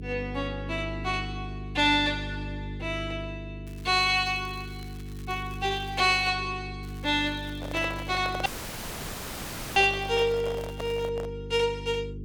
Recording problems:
hum; 50 Hz, harmonics up to 450 Hz, SNR 11 dB
crackling; from 3.5 to 6.5 s and from 7 to 11 s; loose cable, SNR 25 dB
handling noise; from 7.5 to 11 s; peak -5 dB vs average level
audio cutting out; at 8.5 s for 1.5 s

